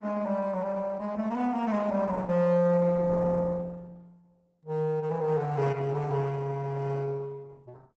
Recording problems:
lossy codec; Opus, log-spectral distance 3 dB, nothing above 8 kHz

